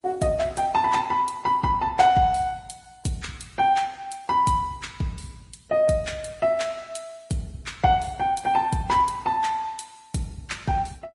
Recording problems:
codec artefacts; Opus, then MP3, log-spectral distance 3 dB, nothing above 11 kHz

